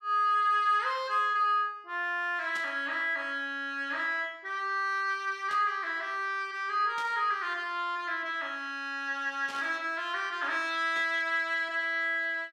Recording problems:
static burst; 5 times, first at 2.5 s; peak -10 dB vs average level

